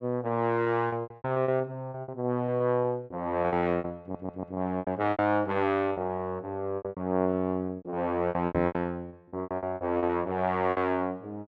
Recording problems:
lost packets; 17% of the sound replaced, filled with repeated pitch periods
audio stuttering; at 4 s
knock on the microphone; at 8.5 s; peak 0 dB vs average level

